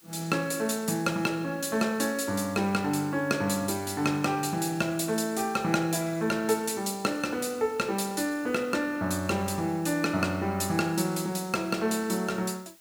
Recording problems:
background hiss; slope +1 dB per octave, SNR 26 dB

